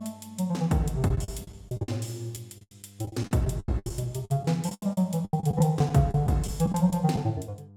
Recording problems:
hum; 50 Hz, harmonics up to 700 Hz, SNR 24 dB
packet loss; 14% of the sound replaced, filled with the last packet

